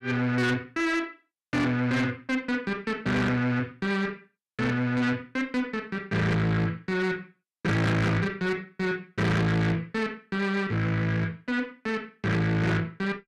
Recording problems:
distortion; soft clipping, signal-to-distortion ratio 6 dB

